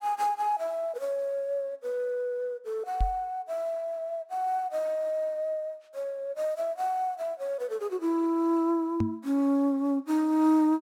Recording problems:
microphone thump; at 3 s and at 9 s; peak +4 dB vs average level

